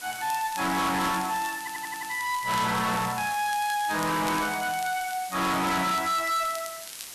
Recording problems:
distortion; soft clipping, signal-to-distortion ratio 7 dB
background hiss; slope +2 dB per octave, SNR 12 dB
crackle; vinyl, SNR 18 dB
stutter; at 1.5 s

